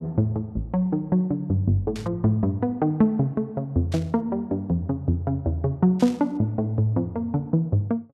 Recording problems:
static burst; at 2 s, at 4 s and at 6 s; peak -11 dB vs average level

